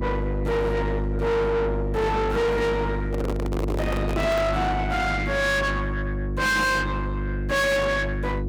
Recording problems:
distortion; soft clipping, signal-to-distortion ratio 7 dB
hum; 50 Hz, harmonics up to 550 Hz, SNR 4 dB
handling noise; from 3 to 4.5 s; peak -2 dB vs average level

